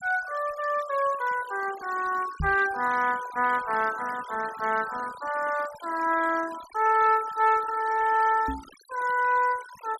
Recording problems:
noise reduction artefacts; signal-to-artefact ratio 17 dB
microphone thump; at 2.5 s and at 8.5 s; peak -2 dB vs average level

